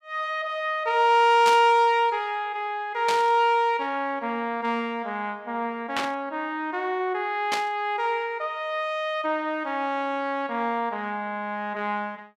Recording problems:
static burst; 4 times, first at 1.5 s; peak +1 dB vs average level

